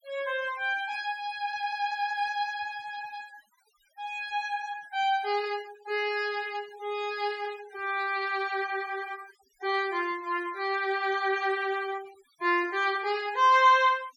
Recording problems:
denoising artefacts; signal-to-artefact ratio 20 dB

